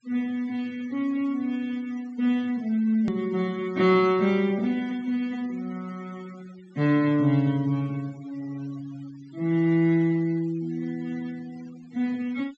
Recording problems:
treble missing; nothing above 8 kHz
noise reduction artefacts; signal-to-artefact ratio 24 dB
edit click; at 3 s

